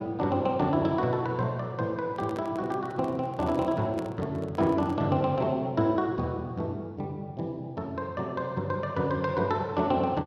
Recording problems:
handling noise; from 2 to 5 s; peak -5 dB vs average level

